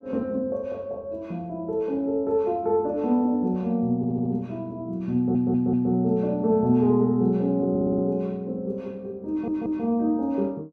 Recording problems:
stutter; 4 times, first at 4 s

